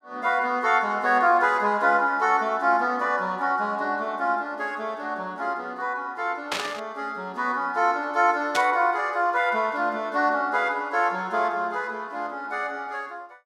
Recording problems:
burst of static; at 6.5 s and at 8.5 s; peak +1 dB vs average level

